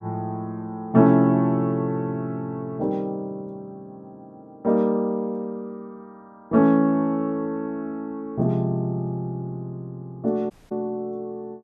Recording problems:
dropout; at 11 s

